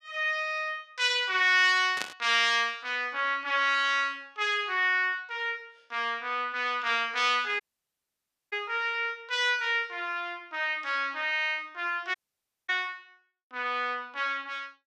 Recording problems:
static burst; at 2 s; peak -1 dB vs average level
dropout; at 7.5 s for 1 s and at 12 s for 0.5 s

